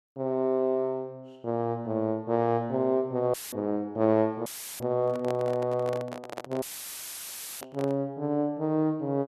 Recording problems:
audio cutting out; at 3.5 s, at 4.5 s and at 6.5 s for 1 s; filled with static
handling noise; from 5 to 8 s; peak -4 dB vs average level

